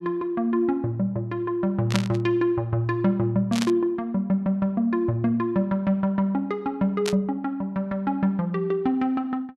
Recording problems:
burst of static; at 2 s, at 3.5 s and at 7 s; peak +2 dB vs average level

